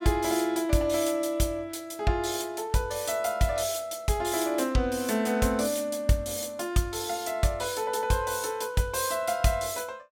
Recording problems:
none

